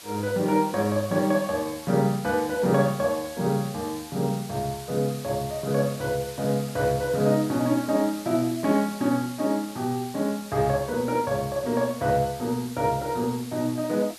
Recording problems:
background hiss; slope +1 dB per octave, SNR 16 dB

